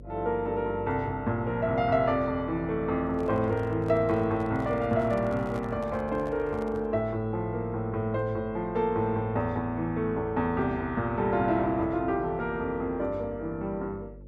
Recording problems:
electrical hum; 50 Hz, harmonics up to 600 Hz, SNR 18 dB
handling noise; from 3 to 7 s; peak -11 dB vs average level

